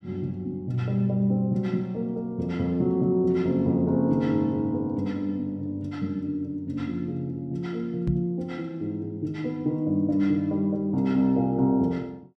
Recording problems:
knock on the microphone; at 8 s; peak +2 dB vs average level

